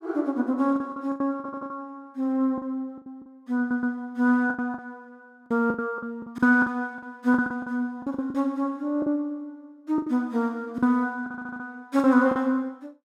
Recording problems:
packet loss; 12% of the sound replaced, filled with the last packet
stutter; at 1.5 s, at 3.5 s and at 11 s

